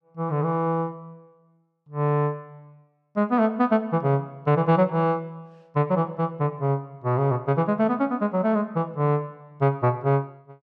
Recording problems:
none

